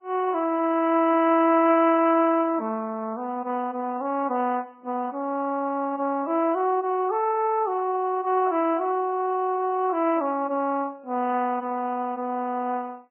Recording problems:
lossy compression; MP3, then Vorbis, log-spectral distance 2 dB, nothing above 2.7 kHz

